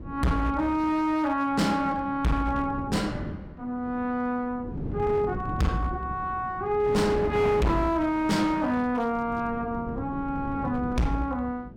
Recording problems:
distortion; hard clipping, uneven, signal-to-distortion ratio 6 dB
wind on the microphone; below 290 Hz, SNR 10 dB

